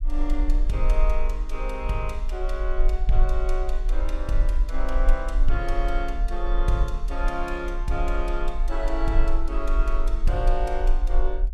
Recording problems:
low-frequency rumble; below 38 Hz, strongest tone 22 Hz, SNR -3 dB

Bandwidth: 15.5 kHz